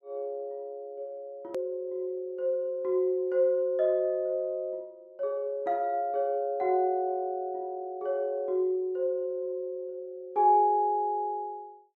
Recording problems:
edit click; at 1.5 s

